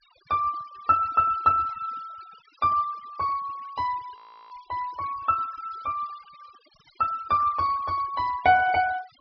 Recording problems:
treble missing; nothing above 5.5 kHz
noise reduction artefacts; signal-to-artefact ratio 21 dB
audio freezing; at 4 s

